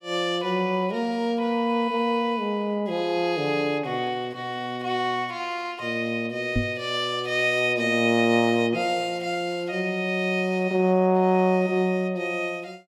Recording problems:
knock on the microphone; at 6.5 s; peak +2 dB vs average level

